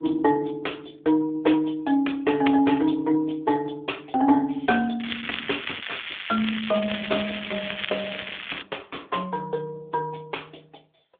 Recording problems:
phone line; 240 Hz to 3.5 kHz, AMR-NB
crackle; from 5 to 8.5 s; loose cable, SNR 7 dB

